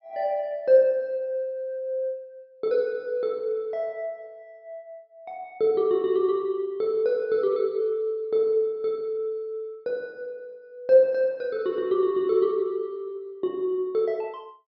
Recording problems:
treble missing; nothing above 5.5 kHz

